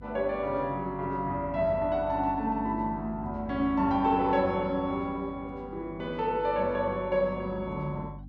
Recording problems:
electrical hum; 50 Hz, harmonics up to 300 Hz, SNR 17 dB

